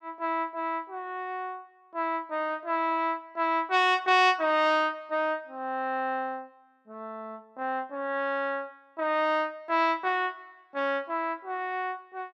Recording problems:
none

